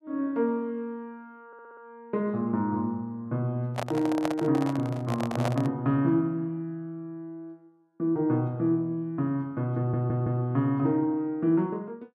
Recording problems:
stutter; at 1.5 s and at 10 s
handling noise; from 3.5 to 5.5 s; peak +1 dB vs average level

